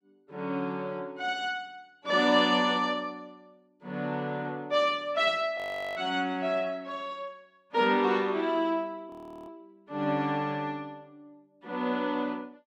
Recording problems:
audio freezing; at 5.5 s and at 9 s

